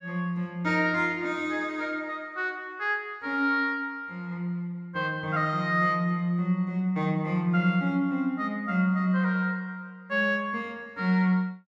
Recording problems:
none

